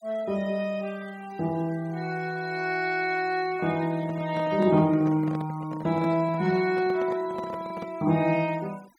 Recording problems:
noise reduction artefacts; signal-to-artefact ratio 24 dB
microphone handling noise; from 4 to 8 s; peak -7 dB vs average level

